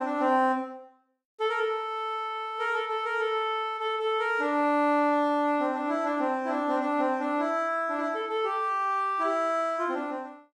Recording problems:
none

